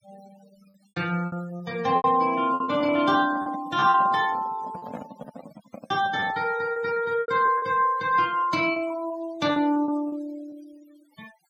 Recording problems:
noise reduction artefacts; signal-to-artefact ratio 21 dB
packet loss; 9% of the sound replaced, filled with repeated pitch periods
handling noise; from 2.5 to 6.5 s; peak -7 dB vs average level

